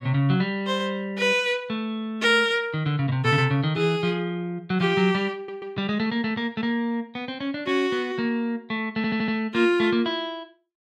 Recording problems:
audio stuttering; at 5.5 s and at 9 s

